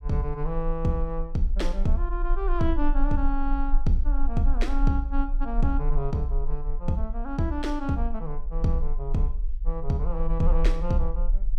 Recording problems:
rumble; below 36 Hz, strongest tone 20 Hz, SNR 1 dB

